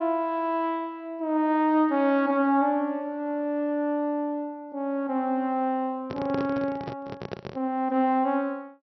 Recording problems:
treble missing; nothing above 5.7 kHz
microphone handling noise; from 6 to 7.5 s; peak -3 dB vs average level

